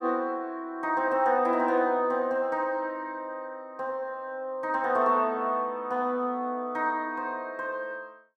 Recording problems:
none

